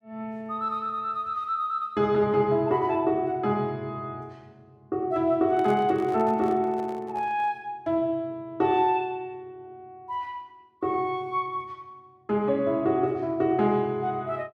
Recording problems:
handling noise; from 5.5 to 7.5 s; peak -9 dB vs average level

